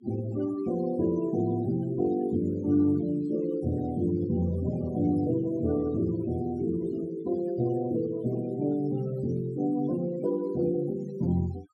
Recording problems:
denoising artefacts; signal-to-artefact ratio 19 dB

